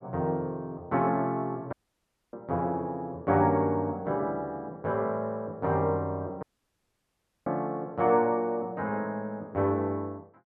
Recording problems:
audio cutting out; at 1.5 s for 0.5 s and at 6.5 s for 1 s

